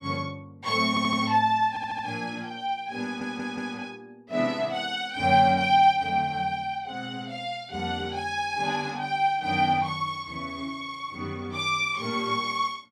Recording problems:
stutter; at 1 s, at 1.5 s and at 3 s

